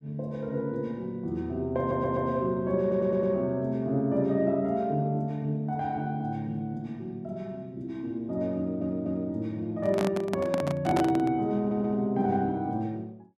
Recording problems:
stutter; 4 times, first at 2 s
microphone handling noise; from 10 to 11 s; peak +2 dB vs average level

